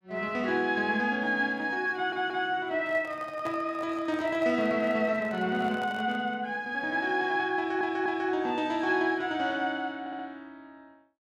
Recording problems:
stutter; at 2 s, at 7.5 s and at 10 s
microphone handling noise; from 3 to 6.5 s; peak -8 dB vs average level

